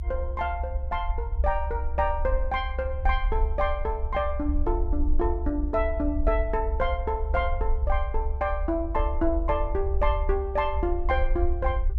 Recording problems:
rumble; below 66 Hz, SNR 1 dB

